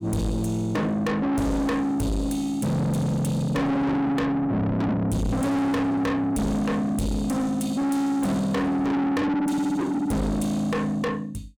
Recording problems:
distortion; soft clipping, signal-to-distortion ratio 6 dB

